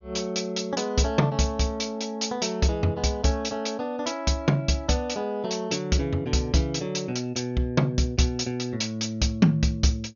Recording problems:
treble cut off; nothing above 6.7 kHz

